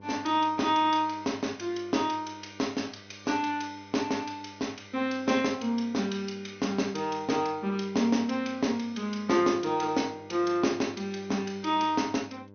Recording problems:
treble missing; nothing above 6.3 kHz
hum; 50 Hz, harmonics up to 1.1 kHz, SNR 23 dB

